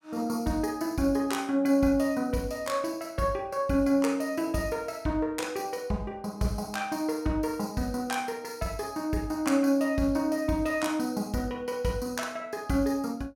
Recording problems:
none

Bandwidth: 17 kHz